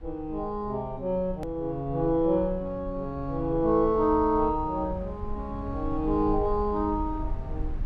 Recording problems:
low-frequency rumble; below 78 Hz, SNR 12 dB
edit click; at 1.5 s

